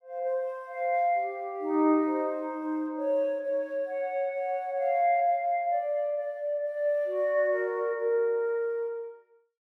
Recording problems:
none

